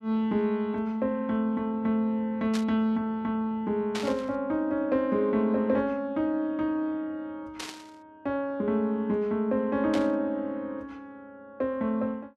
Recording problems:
static burst; 4 times, first at 2.5 s; peak -3 dB vs average level

